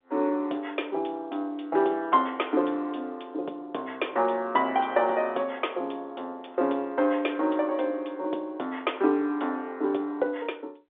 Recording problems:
telephone audio; 260 Hz to 3.6 kHz, G.711

